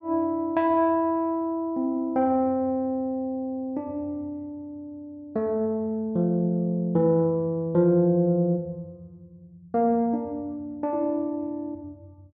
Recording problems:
none

